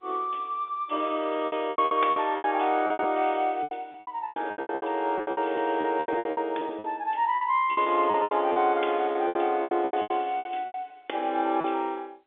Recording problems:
telephone audio; 280 Hz to 3.6 kHz, G.711
lost packets; 18% of the sound replaced, filled with repeated pitch periods

